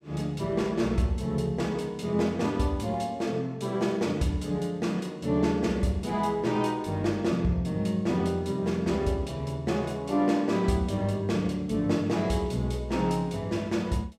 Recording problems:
none

